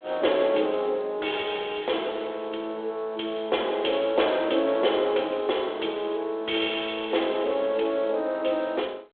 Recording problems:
telephone audio; 280 Hz to 3.6 kHz, G.726

